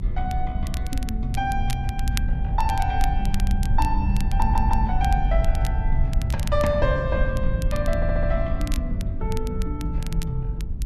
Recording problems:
rumble; below 70 Hz, SNR -1 dB
crackle; vinyl, SNR 13 dB
audio stuttering; at 4.5 s and at 8 s

